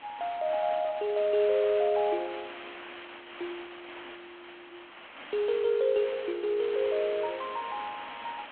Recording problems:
phone line; 240 Hz to 3.4 kHz, G.726
background hiss; SNR 15 dB

